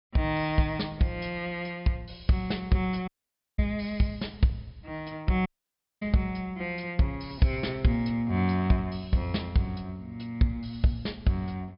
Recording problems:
treble missing; nothing above 5.5 kHz
audio cutting out; at 3 s for 0.5 s and at 5.5 s for 0.5 s

